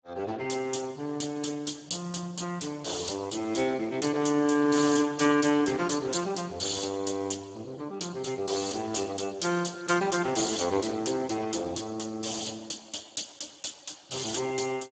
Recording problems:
lossy compression; Speex, log-spectral distance 8 dB, nothing above 7.6 kHz

